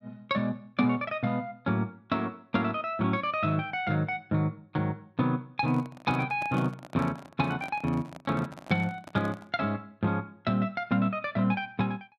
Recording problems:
handling noise; from 5.5 to 9.5 s; peak -7 dB vs average level

